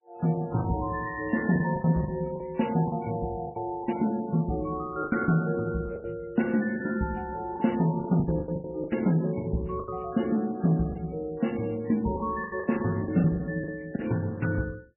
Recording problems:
lossy compression; MP3, log-spectral distance 5 dB, nothing above 2.9 kHz
packet loss; 11% of the sound replaced, filled with the last packet

